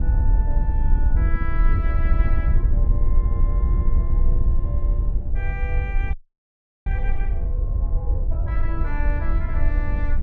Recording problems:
wind noise; below 62 Hz, SNR -13 dB
audio freezing; at 6 s for 0.5 s

